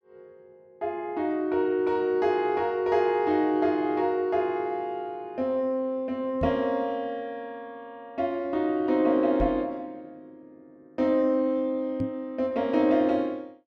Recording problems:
microphone bump; at 6.5 s, at 9.5 s and at 12 s; peak -1 dB vs average level

